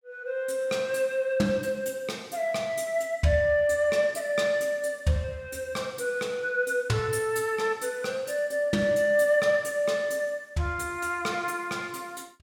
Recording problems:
none

